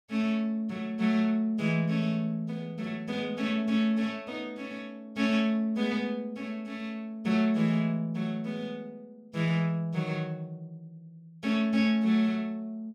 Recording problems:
none

